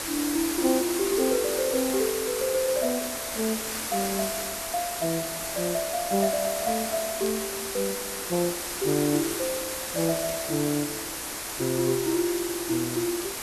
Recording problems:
background hiss; slope -2 dB per octave, SNR 2 dB
crackling; vinyl, SNR 26 dB

